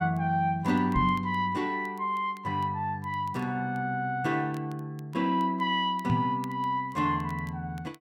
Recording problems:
crackling; vinyl, SNR 30 dB
knock on the microphone; at 1 s and at 6 s; peak +4 dB vs average level

